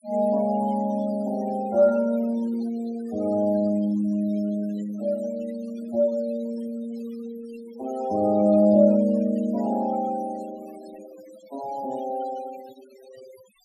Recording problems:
noise reduction artefacts; signal-to-artefact ratio 20 dB

